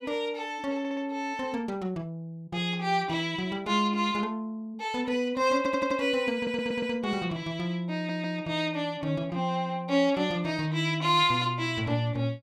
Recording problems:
stutter; 4 times, first at 1 s

